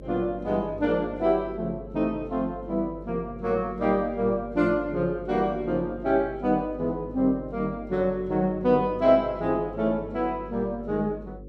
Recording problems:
electrical hum; 50 Hz, harmonics up to 550 Hz, SNR 17 dB

